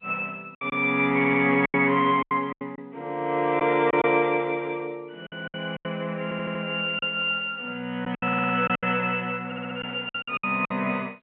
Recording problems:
telephone audio; 220 Hz to 3.3 kHz, G.711
packet loss; 10% of the sound replaced, filled with silence
audio stuttering; 4 times, first at 1 s

